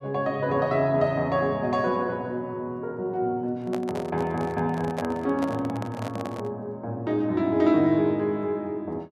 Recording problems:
microphone handling noise; from 3.5 to 6.5 s; peak -1 dB vs average level

